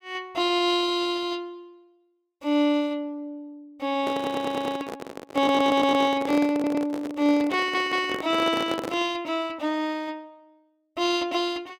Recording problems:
microphone handling noise; from 4 to 9 s; peak -2 dB vs average level
audio stuttering; 4 times, first at 4 s

